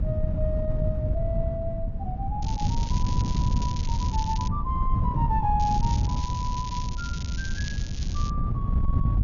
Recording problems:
treble missing; nothing above 6.9 kHz
wind noise; below 120 Hz, SNR -5 dB
crackle; from 2.5 to 4.5 s and from 5.5 to 8.5 s; loose cable, SNR 8 dB

